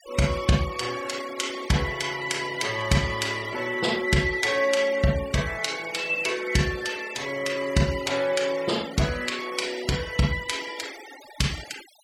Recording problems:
noise reduction artefacts; signal-to-artefact ratio 15 dB

